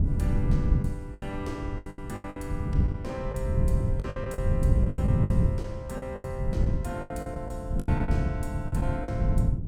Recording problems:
wind noise; below 140 Hz, SNR -7 dB
lost packets; 14% of the sound replaced, filled with the last packet

